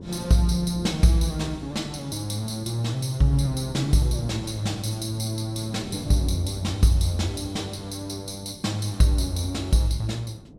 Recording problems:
wind on the microphone; below 310 Hz, SNR 16 dB

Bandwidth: 16 kHz